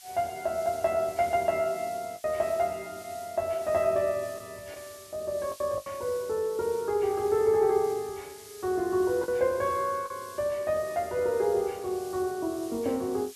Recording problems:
background hiss; slope +6 dB per octave, SNR 19 dB
lost packets; 3% of the sound replaced, filled with the last packet

